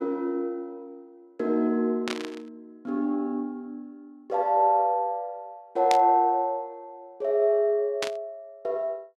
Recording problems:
static burst; at 2 s, at 6 s and at 8 s; peak +1 dB vs average level

